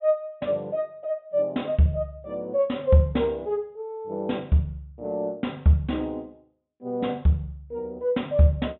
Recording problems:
low-pass filter; nothing above 3.8 kHz

